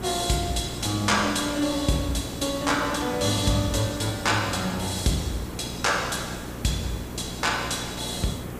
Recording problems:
hum; 60 Hz, harmonics up to 900 Hz, SNR 14 dB
background hiss; SNR 11 dB

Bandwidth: 15 kHz